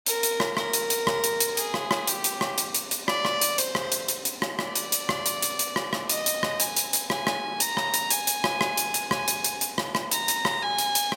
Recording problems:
none

